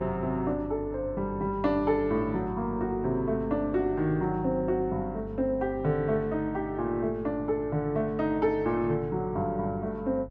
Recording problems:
hum; 50 Hz, harmonics up to 400 Hz, SNR 15 dB

